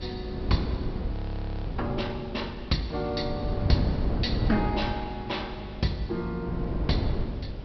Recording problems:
treble cut off; nothing above 5.5 kHz
hum; 50 Hz, harmonics up to 600 Hz, SNR 13 dB
hiss; SNR 22 dB
wind noise; below 240 Hz, SNR 1 dB
frozen audio; at 1 s for 0.5 s

